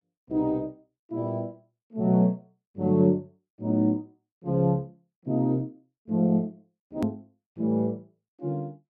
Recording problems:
hard cut with a click; at 7 s

